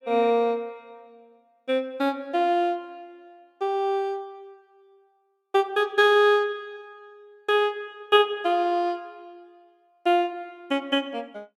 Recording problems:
none

